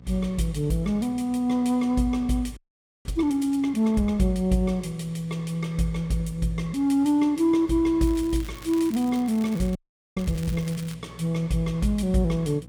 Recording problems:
electrical hum; 60 Hz, harmonics up to 780 Hz, SNR 24 dB
frozen audio; at 2.5 s and at 10 s
crackle; from 8 to 11 s; loose cable, SNR 21 dB

